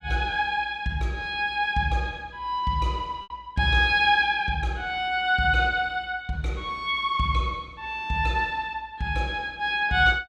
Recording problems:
packet loss; 0.8% of the sound replaced, filled with repeated pitch periods

